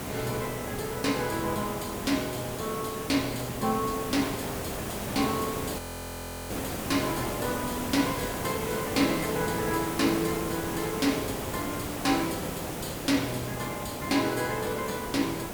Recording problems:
background hiss; slope -6 dB per octave, SNR 4 dB
audio freezing; at 6 s for 0.5 s

